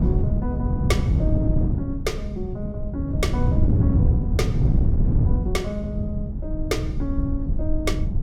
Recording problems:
rumble; below 64 Hz, SNR 5 dB
wind noise; below 150 Hz, SNR -6 dB

